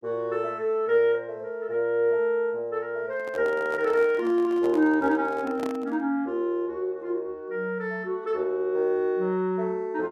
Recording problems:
handling noise; from 3 to 6 s; peak -6 dB vs average level

